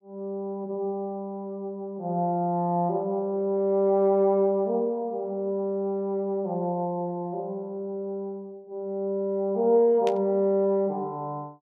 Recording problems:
burst of static; at 10 s; peak -6 dB vs average level

